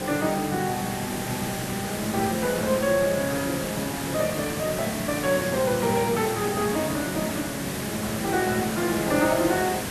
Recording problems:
hiss; slope -3 dB per octave, SNR 5 dB

